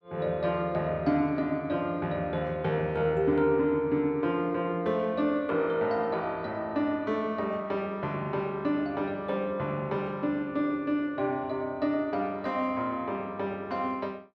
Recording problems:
none

